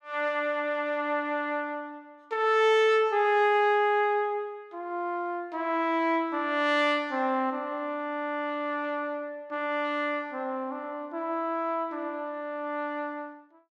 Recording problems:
none

